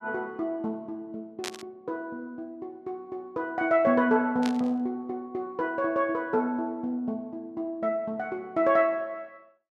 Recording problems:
static burst; at 1.5 s and at 4.5 s; peak -2 dB vs average level

